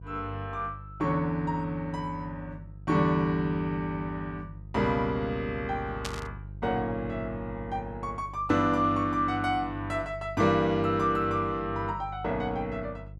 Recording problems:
mains hum; 50 Hz, harmonics up to 350 Hz, SNR 15 dB
static burst; at 6 s; peak -1 dB vs average level

